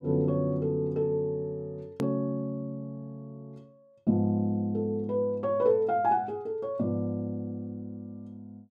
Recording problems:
click at an edit; at 2 s

